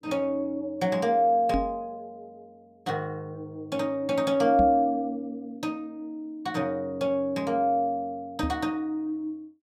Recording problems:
microphone thump; at 1.5 s, at 4.5 s and at 8.5 s; peak +2 dB vs average level

